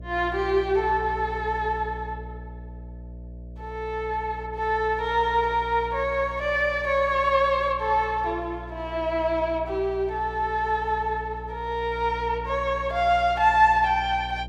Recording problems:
hum; 60 Hz, harmonics up to 660 Hz, SNR 15 dB

